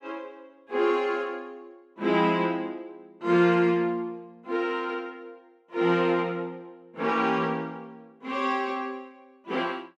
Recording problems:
none

